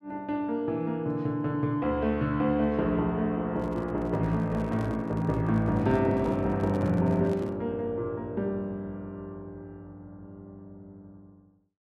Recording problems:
handling noise; from 3.5 to 7.5 s; peak -9 dB vs average level

